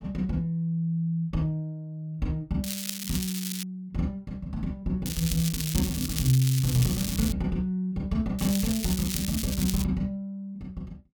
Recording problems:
crackling; from 2.5 to 3.5 s, from 5 to 7.5 s and from 8.5 to 10 s; loose cable, SNR 4 dB

